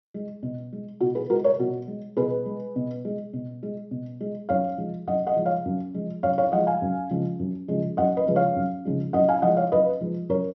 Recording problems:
treble cut off; nothing above 5.9 kHz

